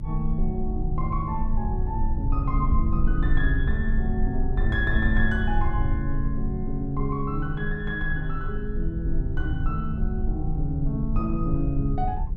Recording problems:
rumble; below 64 Hz, strongest tone 22 Hz, SNR 0 dB

